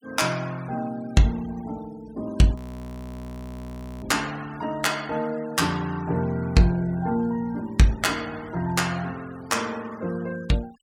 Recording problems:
noise reduction artefacts; signal-to-artefact ratio 23 dB
audio freezing; at 2.5 s for 1.5 s

